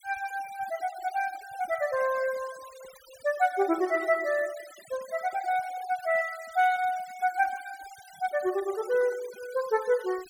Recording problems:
noise reduction artefacts; signal-to-artefact ratio 19 dB

